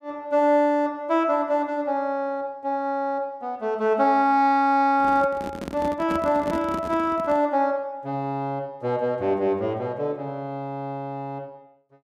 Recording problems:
handling noise; from 5 to 7.5 s; peak -4 dB vs average level

